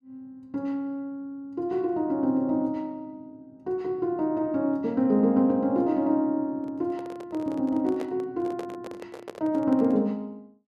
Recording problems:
handling noise; from 6.5 to 10 s; peak -7 dB vs average level

